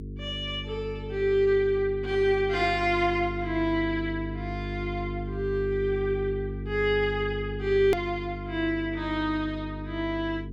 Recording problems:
electrical hum; 50 Hz, harmonics up to 450 Hz, SNR 9 dB
click at an edit; at 8 s

